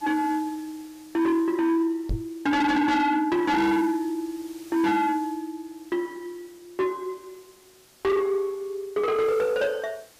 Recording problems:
distorted audio; soft clipping, signal-to-distortion ratio 6 dB
background hiss; slope -1 dB per octave, SNR 25 dB
knock on the microphone; at 2 s; peak 0 dB vs average level

